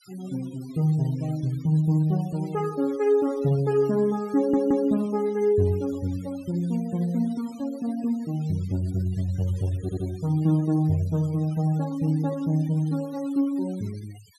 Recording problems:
denoising artefacts; signal-to-artefact ratio 24 dB
stutter; at 4.5 s and at 10 s

